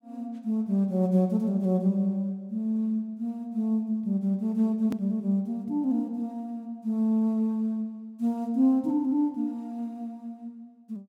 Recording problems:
edit click; at 5 s

